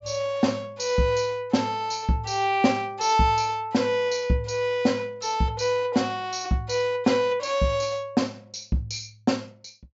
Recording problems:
treble missing; nothing above 8 kHz

